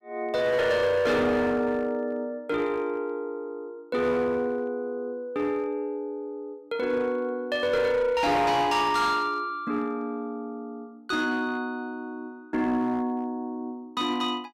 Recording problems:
distorted audio; hard clipping, uneven, signal-to-distortion ratio 11 dB

